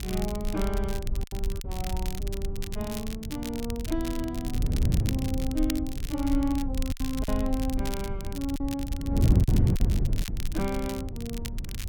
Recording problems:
rumble; below 54 Hz, SNR 4 dB
wind on the microphone; below 150 Hz, SNR -1 dB
crackling; vinyl, SNR 9 dB
packet loss; 3% of the sound replaced, filled with silence

